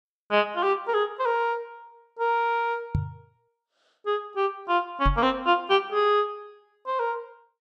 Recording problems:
microphone bump; at 3 s and at 5 s; peak +3 dB vs average level

